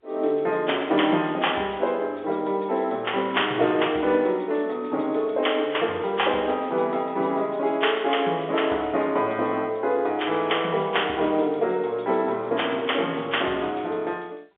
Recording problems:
phone line; 280 Hz to 3.5 kHz, G.711

